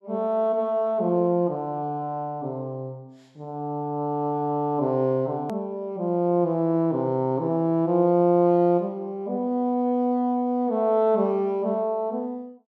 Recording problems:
click at an edit; at 5.5 s

